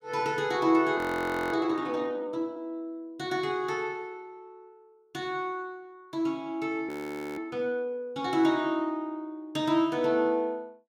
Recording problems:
audio freezing; at 1 s for 0.5 s and at 7 s

